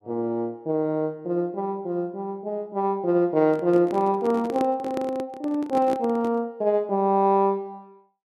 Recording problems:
handling noise; from 3.5 to 6.5 s; peak -3 dB vs average level

